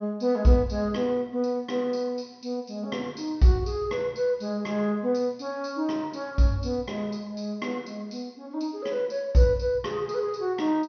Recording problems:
treble cut off; nothing above 6.2 kHz

